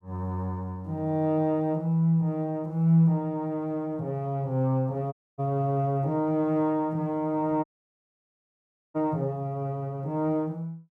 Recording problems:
dropout; at 5 s and at 7.5 s for 1.5 s

